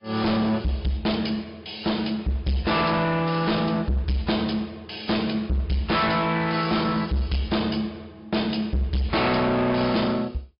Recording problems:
treble missing; nothing above 5.2 kHz
codec artefacts; AAC, log-spectral distance 4 dB
distorted audio; hard clipping, uneven, signal-to-distortion ratio 6 dB

